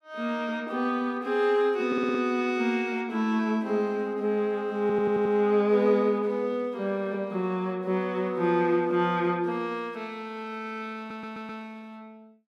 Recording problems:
audio stuttering; at 2 s, at 5 s and at 11 s

